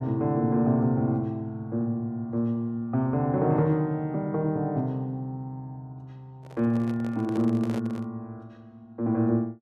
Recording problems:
microphone handling noise; from 6.5 to 8 s; peak -7 dB vs average level

